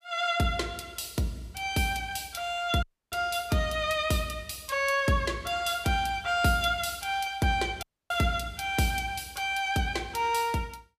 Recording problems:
audio cutting out; at 3 s and at 8 s

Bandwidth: 15 kHz